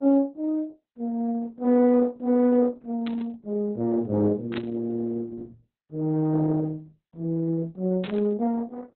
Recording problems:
lossy compression; Opus, log-spectral distance 2 dB
static burst; at 3 s, at 4.5 s and at 8 s; peak -9 dB vs average level

